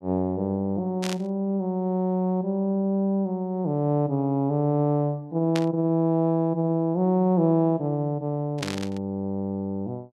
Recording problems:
burst of static; at 1 s, at 5.5 s and at 8.5 s; peak -2 dB vs average level

